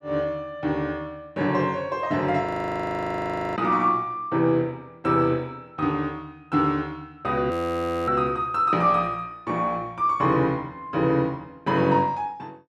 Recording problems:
frozen audio; at 2.5 s for 1 s and at 7.5 s for 0.5 s

